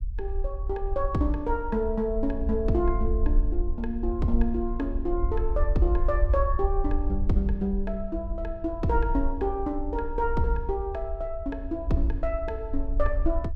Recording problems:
low-frequency rumble; below 56 Hz, SNR 2 dB

